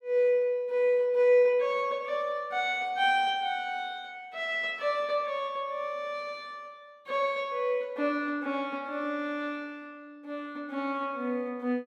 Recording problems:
none

